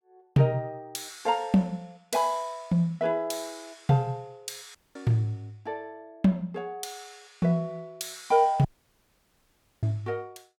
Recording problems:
audio cutting out; at 5 s and at 8.5 s for 1 s

